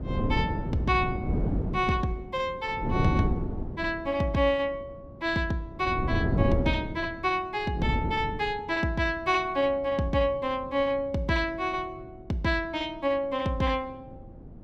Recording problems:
wind on the microphone; below 280 Hz, SNR 3 dB

